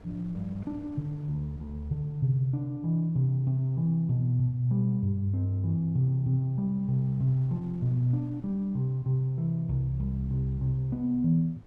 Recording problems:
wind on the microphone; below 260 Hz, SNR 27 dB

